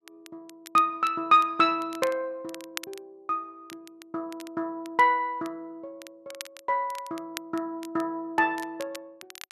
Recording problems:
crackle; vinyl, SNR 18 dB

